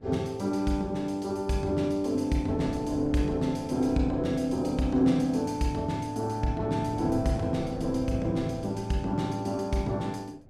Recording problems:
wind noise; below 370 Hz, SNR 13 dB

